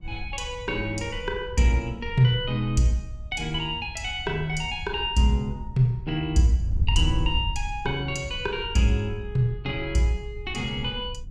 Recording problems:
wind on the microphone; below 78 Hz, SNR 9 dB

